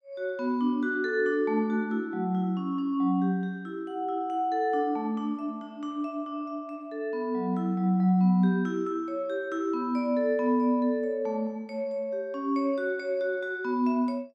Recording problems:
none

